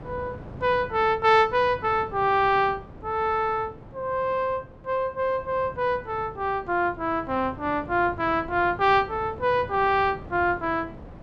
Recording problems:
wind noise; below 460 Hz, SNR 18 dB

